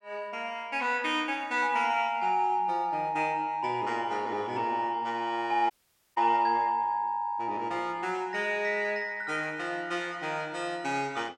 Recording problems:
audio cutting out; at 5.5 s

